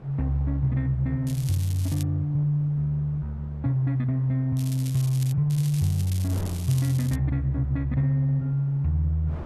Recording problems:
wind noise; below 520 Hz, SNR 22 dB
crackling; at 1.5 s, at 4.5 s and from 5.5 to 7 s; loose cable, SNR 16 dB

